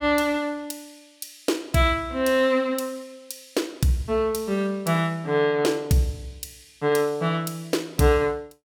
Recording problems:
none

